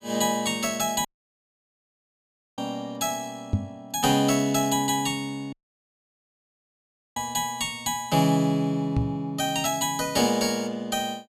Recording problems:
dropout; at 1 s for 1.5 s and at 5.5 s for 1.5 s
microphone bump; at 3.5 s, at 7 s and at 9 s; peak +5 dB vs average level

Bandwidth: 14.5 kHz